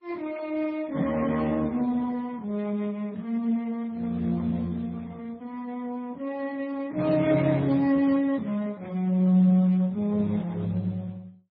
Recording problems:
codec artefacts; Speex, then MP3, log-spectral distance 2 dB, nothing above 16.6 kHz

